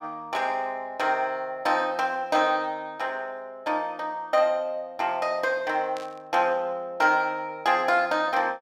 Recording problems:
burst of static; at 6 s; peak -12 dB vs average level

